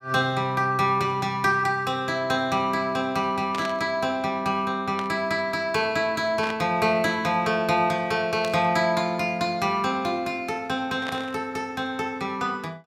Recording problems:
burst of static; 5 times, first at 3.5 s; peak -5 dB vs average level

